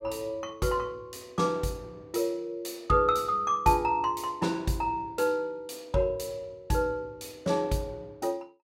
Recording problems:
none

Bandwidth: 16 kHz